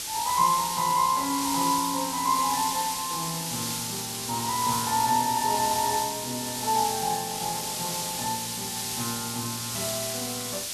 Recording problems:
background hiss; SNR 2 dB

